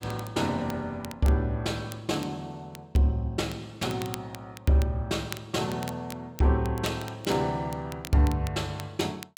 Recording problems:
crackle; vinyl, SNR 17 dB

